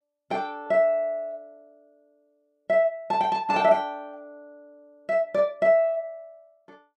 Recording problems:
none

